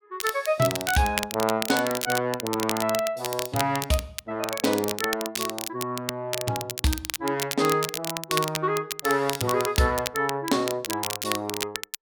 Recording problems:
crackling; vinyl, SNR 5 dB

